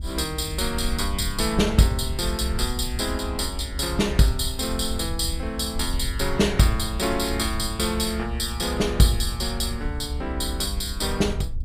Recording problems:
rumble; below 70 Hz, SNR 7 dB

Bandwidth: 15.5 kHz